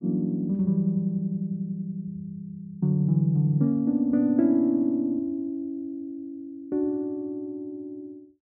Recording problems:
none

